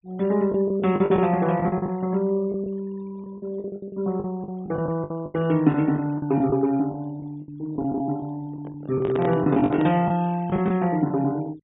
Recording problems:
treble cut off; nothing above 4 kHz
noise reduction artefacts; signal-to-artefact ratio 24 dB
packet loss; 13% of the sound replaced, filled with the last packet
microphone handling noise; from 8.5 to 10 s; peak -1 dB vs average level

